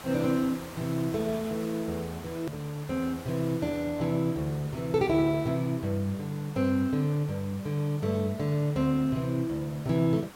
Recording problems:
background hiss; SNR 17 dB
click at an edit; at 2.5 s

